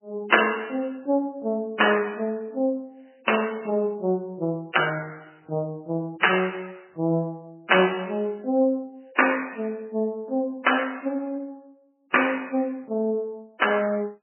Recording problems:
lossy codec; MP3, log-spectral distance 5 dB, nothing above 3 kHz

